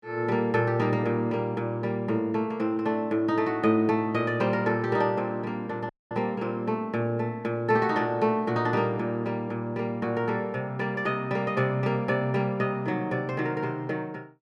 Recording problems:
audio cutting out; at 6 s

